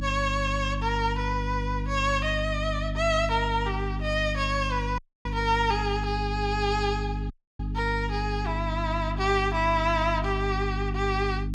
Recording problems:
hum; 50 Hz, harmonics up to 300 Hz, SNR 4 dB
dropout; at 5 s and at 7.5 s

